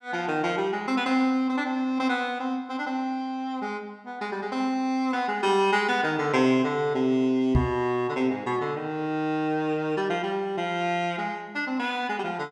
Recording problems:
knock on the microphone; at 7.5 s; peak +8 dB vs average level

